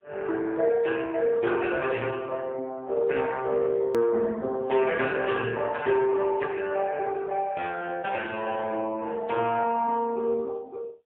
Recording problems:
phone line; 150 Hz to 2.7 kHz, AMR-NB, then MP3
hard cut with a click; at 4 s

